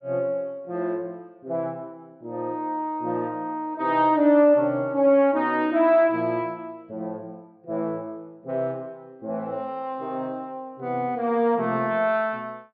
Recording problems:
treble missing; nothing above 5.5 kHz

